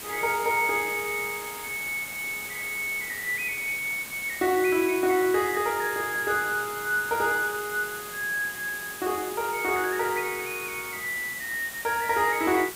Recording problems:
background hiss; slope -1 dB per octave, SNR 10 dB

